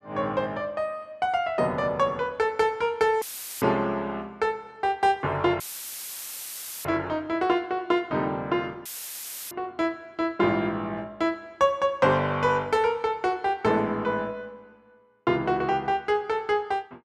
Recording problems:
audio cutting out; at 3 s, at 5.5 s for 1.5 s and at 9 s for 0.5 s; filled with static

